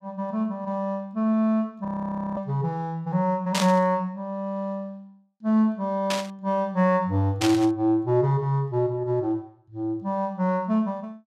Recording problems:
frozen audio; at 2 s for 0.5 s
static burst; at 3.5 s, at 6 s and at 7.5 s; peak +2 dB vs average level

